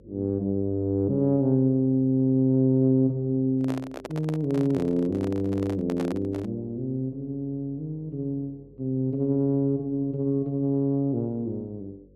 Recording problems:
hum; 50 Hz, harmonics up to 550 Hz, SNR 28 dB
handling noise; from 3.5 to 6.5 s; peak -6 dB vs average level

